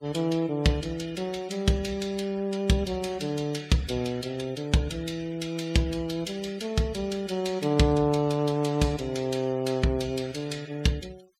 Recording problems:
noise reduction artefacts; signal-to-artefact ratio 22 dB

